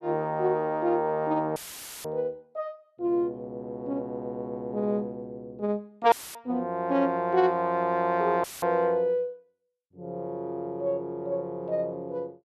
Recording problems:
audio cutting out; at 1.5 s, at 6 s and at 8.5 s; filled with static

